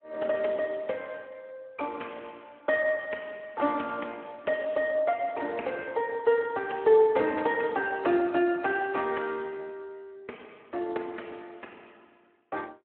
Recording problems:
phone line; 240 Hz to 3.4 kHz, Speex

